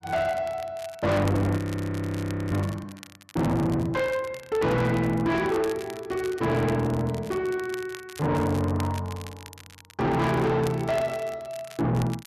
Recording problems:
distorted audio; soft clipping, signal-to-distortion ratio 6 dB
crackle; vinyl, SNR 19 dB
frozen audio; at 1.5 s for 1 s

